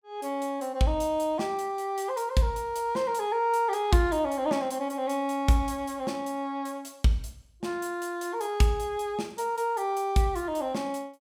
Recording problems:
none

